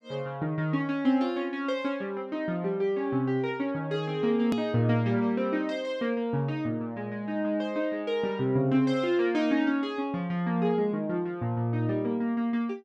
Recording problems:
hard cut with a click; at 4.5 s

